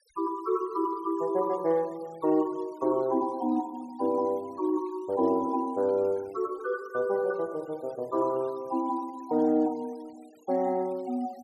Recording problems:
noise reduction artefacts; signal-to-artefact ratio 27 dB

